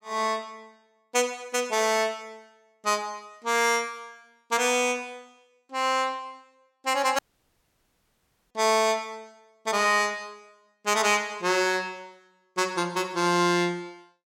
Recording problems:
dropout; at 7 s for 1.5 s

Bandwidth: 17 kHz